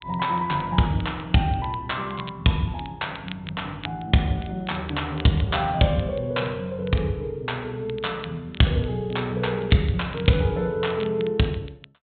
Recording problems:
treble cut off; nothing above 4 kHz
crackle; vinyl, SNR 19 dB

